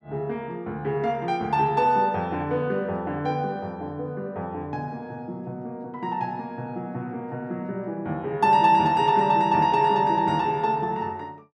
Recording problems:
none

